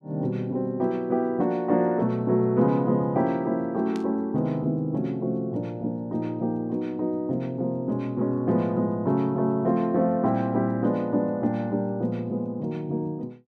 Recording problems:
burst of static; at 4 s; peak -13 dB vs average level

